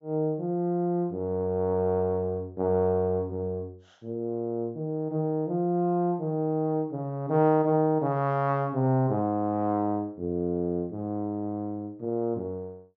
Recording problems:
treble missing; nothing above 8 kHz

